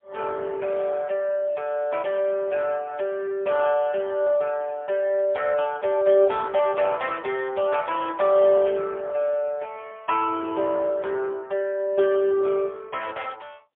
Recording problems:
phone line; 280 Hz to 3.4 kHz, AMR-NB, then MP3

